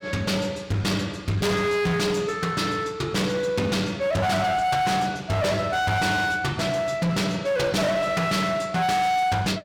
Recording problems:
distortion; hard clipping, signal-to-distortion ratio 7 dB

